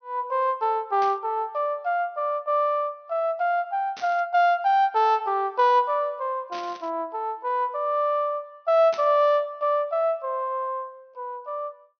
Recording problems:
treble cut off; nothing above 6.3 kHz
static burst; 4 times, first at 1 s; peak -9 dB vs average level

